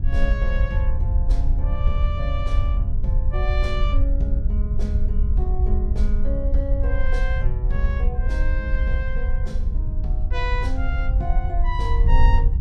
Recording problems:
wind noise; below 62 Hz, SNR -8 dB

